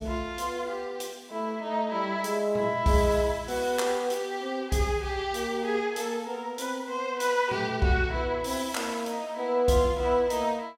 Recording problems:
none

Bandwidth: 16 kHz